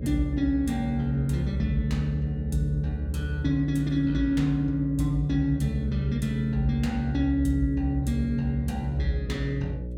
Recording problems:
hum; 60 Hz, harmonics up to 600 Hz, SNR 10 dB

